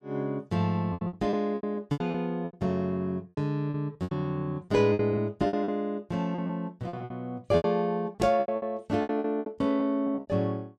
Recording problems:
packet loss; 15% of the sound replaced, filled with repeated pitch periods

